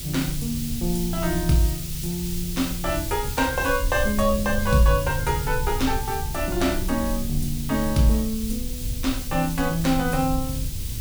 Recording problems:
electrical hum; 60 Hz, harmonics up to 960 Hz, SNR 25 dB
hiss; SNR 9 dB
low-frequency rumble; below 76 Hz, SNR 8 dB

